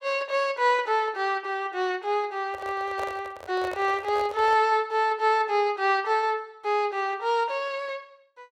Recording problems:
microphone handling noise; from 2.5 to 4.5 s; peak -6 dB vs average level

